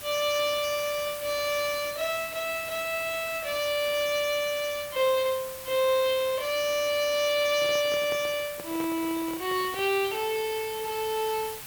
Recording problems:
background hiss; slope 0 dB per octave, SNR 12 dB
microphone handling noise; from 7.5 to 10 s; peak -9 dB vs average level

